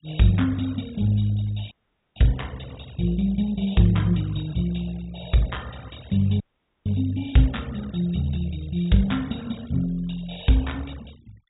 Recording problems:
low-pass filter; nothing above 4 kHz
denoising artefacts; signal-to-artefact ratio 24 dB
audio cutting out; at 1.5 s and at 6.5 s

